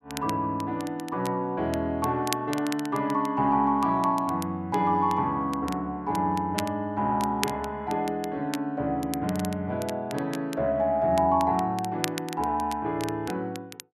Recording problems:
crackling; vinyl, SNR 14 dB

